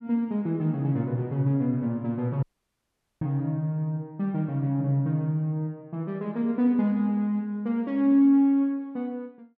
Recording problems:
dropout; at 2.5 s for 1 s

